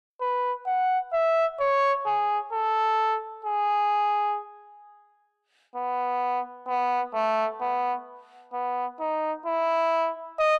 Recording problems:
distortion; soft clipping, signal-to-distortion ratio 10 dB

